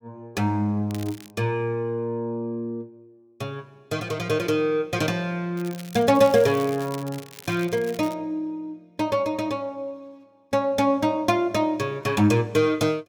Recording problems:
crackle; at 1 s and from 5.5 to 8 s; loose cable, SNR 19 dB

